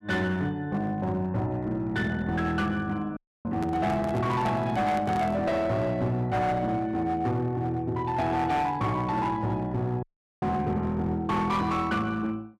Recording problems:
distortion; hard clipping, uneven, signal-to-distortion ratio 11 dB
dropout; at 3 s and at 10 s
microphone handling noise; from 3.5 to 5.5 s; peak -5 dB vs average level

